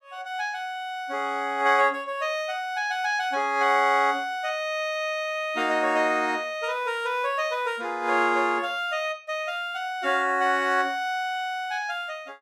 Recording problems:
none

